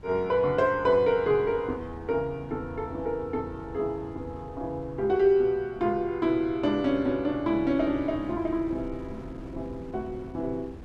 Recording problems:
wind noise; below 220 Hz, SNR 19 dB

